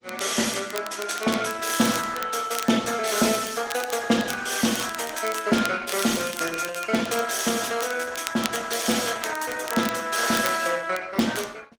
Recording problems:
lossy compression; Opus, log-spectral distance 6 dB
crackling; vinyl, SNR 13 dB

